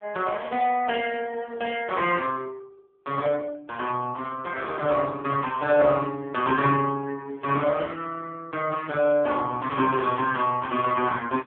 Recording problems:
phone line; 150 Hz to 3.3 kHz, AMR-NB

